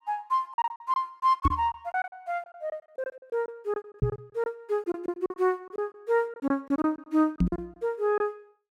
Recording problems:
lost packets; 14% of the sound replaced, filled with silence
microphone bump; at 1.5 s, at 4 s and at 7.5 s; peak +9 dB vs average level

